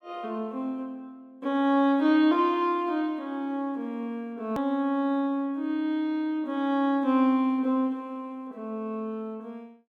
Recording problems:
click at an edit; at 4.5 s

